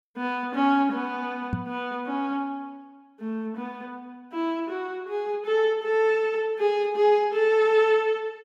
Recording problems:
knock on the microphone; at 1.5 s; peak 0 dB vs average level

